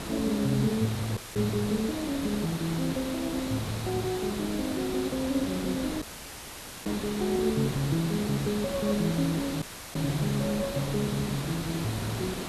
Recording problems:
background hiss; slope -4 dB per octave, SNR 5 dB
audio cutting out; at 1 s, at 6 s for 1 s and at 9.5 s

